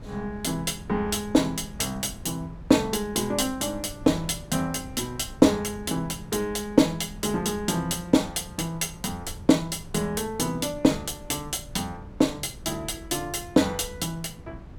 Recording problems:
wind noise; below 180 Hz, SNR 17 dB

